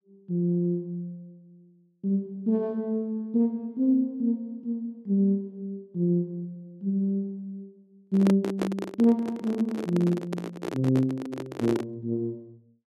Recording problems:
microphone handling noise; from 8 to 12 s; peak +3 dB vs average level

